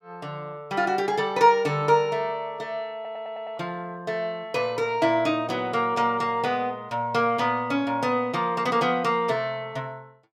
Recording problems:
audio stuttering; at 3 s

